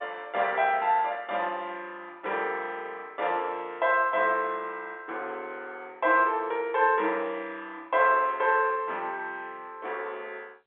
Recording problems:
telephone audio; 280 Hz to 3.6 kHz, G.711

